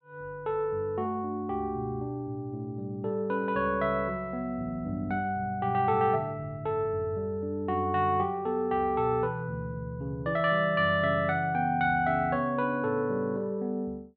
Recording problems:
none

